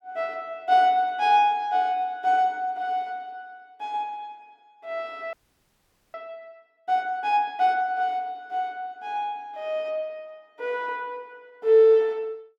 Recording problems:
frozen audio; at 5.5 s for 1 s

